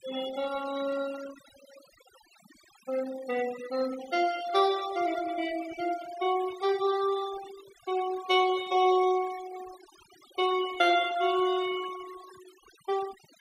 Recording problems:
denoising artefacts; signal-to-artefact ratio 17 dB

